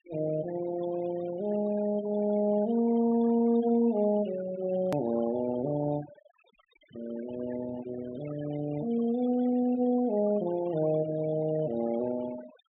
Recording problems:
low-pass filter; nothing above 4 kHz
noise reduction artefacts; signal-to-artefact ratio 17 dB
hard cut with a click; at 5 s

